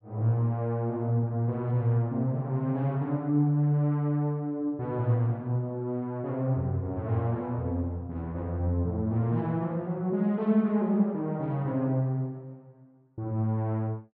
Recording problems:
none

